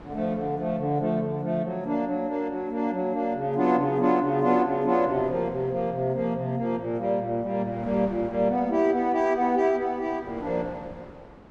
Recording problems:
wind on the microphone; below 810 Hz, SNR 22 dB

